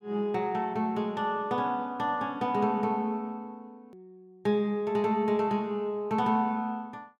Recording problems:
edit click; at 4 s

